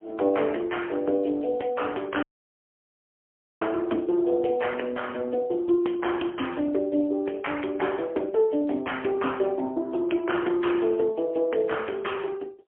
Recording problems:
telephone audio; 240 Hz to 3.3 kHz, AMR-NB, then MP3
audio cutting out; at 2 s for 1.5 s

